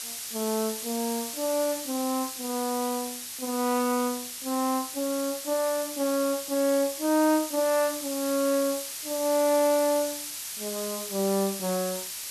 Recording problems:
hiss; slope +4 dB per octave, SNR 6 dB

